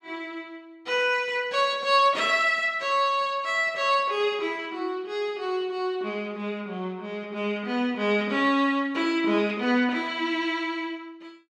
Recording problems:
none

